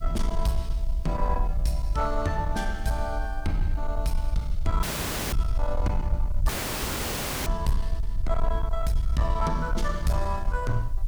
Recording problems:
distortion; soft clipping, signal-to-distortion ratio 12 dB
background hiss; SNR 30 dB
rumble; below 50 Hz, strongest tone 22 Hz, SNR 1 dB
dropout; at 5 s for 0.5 s and at 6.5 s for 1 s

